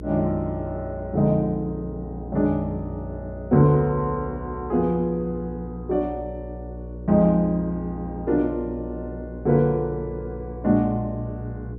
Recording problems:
hum; 60 Hz, harmonics up to 480 Hz, SNR 12 dB

